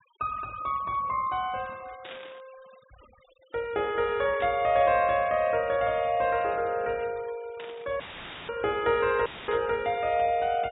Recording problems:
treble cut off; nothing above 4 kHz
denoising artefacts; signal-to-artefact ratio 24 dB
static burst; 4 times, first at 2 s; peak -11 dB vs average level
dropout; at 8 s and at 9.5 s; filled with static

